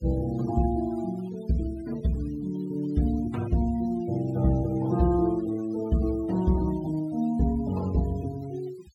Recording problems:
denoising artefacts; signal-to-artefact ratio 22 dB

